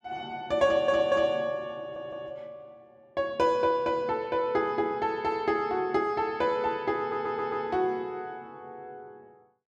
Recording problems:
audio stuttering; at 0.5 s, at 2 s and at 7 s

